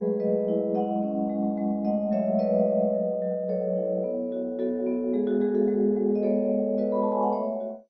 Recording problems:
lossy compression; MP2, log-spectral distance 2 dB, nothing above 5.5 kHz

